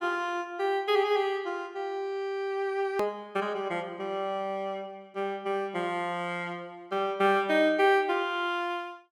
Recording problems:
hard cut with a click; at 3 s

